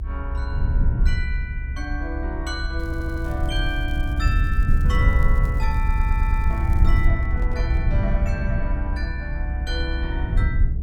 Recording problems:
rumble; below 78 Hz, SNR -7 dB
crackling; from 3 to 7 s; loose cable, SNR 22 dB
stutter; at 3 s and at 6 s
handling noise; from 6 to 8 s; peak -6 dB vs average level

